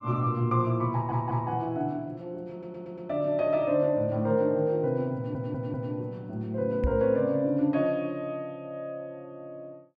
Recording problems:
audio stuttering; at 1 s, at 2.5 s and at 5 s
microphone bump; at 7 s; peak +4 dB vs average level

